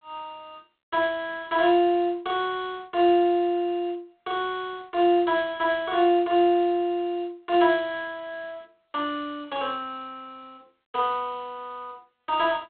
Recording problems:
telephone audio; 300 Hz to 3.5 kHz, G.726

